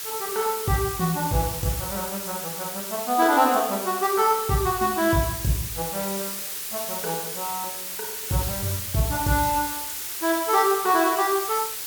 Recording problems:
background hiss; SNR 5 dB

